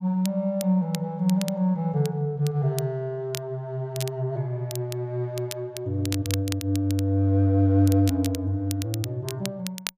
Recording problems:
crackle; vinyl, SNR 13 dB

